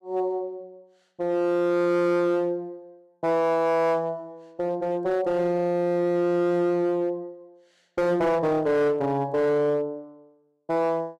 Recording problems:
distortion; hard clipping, uneven, signal-to-distortion ratio 10 dB

